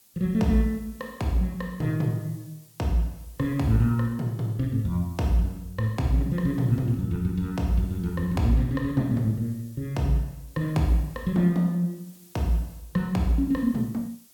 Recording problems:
hiss; SNR 26 dB

